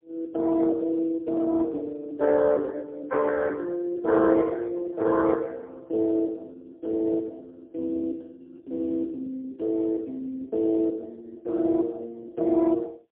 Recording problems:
telephone audio; 990 Hz to 2.1 kHz, AMR-NB, then MP3

